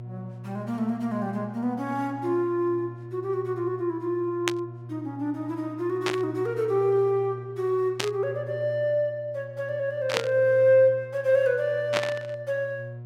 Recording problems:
mains hum; 60 Hz, harmonics up to 720 Hz, SNR 15 dB
static burst; 5 times, first at 4.5 s; peak +5 dB vs average level

